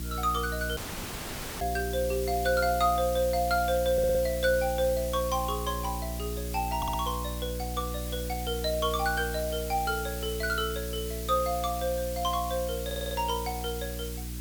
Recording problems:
hum; 60 Hz, harmonics up to 360 Hz, SNR 7 dB
background hiss; slope +1 dB per octave, SNR 10 dB
audio cutting out; at 1 s for 1 s
audio stuttering; at 4 s, at 7 s and at 13 s

